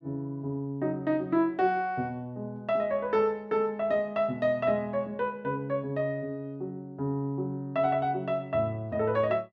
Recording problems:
none

